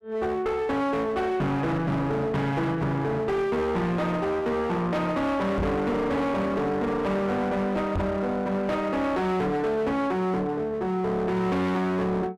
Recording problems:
distortion; hard clipping, uneven, signal-to-distortion ratio 6 dB
knock on the microphone; at 5.5 s and at 8 s; peak +3 dB vs average level

